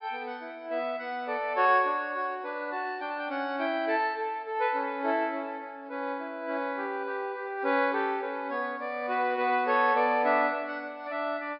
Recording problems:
treble missing; nothing above 5.5 kHz

